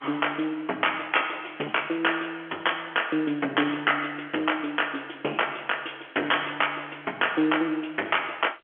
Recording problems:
telephone audio; 240 Hz to 3.3 kHz, G.711
distortion; hard clipping, uneven, signal-to-distortion ratio 10 dB

